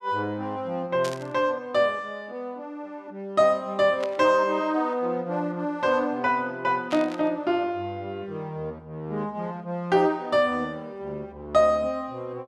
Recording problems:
burst of static; at 1 s, at 4 s and at 7 s; peak -6 dB vs average level

